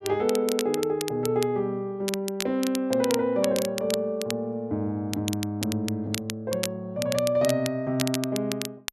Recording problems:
crackling; vinyl, SNR 8 dB

